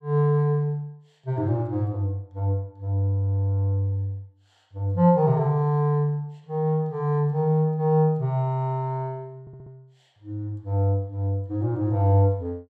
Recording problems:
stutter; at 9.5 s

